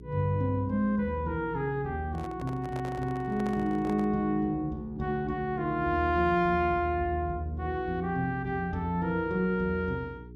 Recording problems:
hum; 60 Hz, harmonics up to 420 Hz, SNR 16 dB
handling noise; from 2 to 4 s; peak -9 dB vs average level

